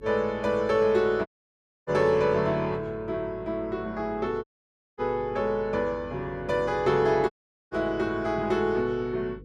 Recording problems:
hum; 50 Hz, harmonics up to 500 Hz, SNR 21 dB
audio cutting out; at 1.5 s for 0.5 s, at 4.5 s for 0.5 s and at 7.5 s

